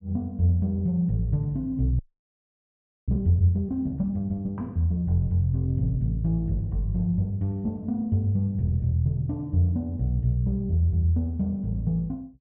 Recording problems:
frozen audio; at 2 s for 1 s

